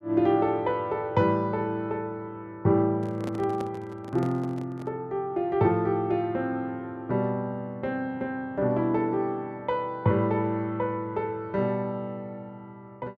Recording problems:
microphone handling noise; from 3 to 5 s; peak -5 dB vs average level

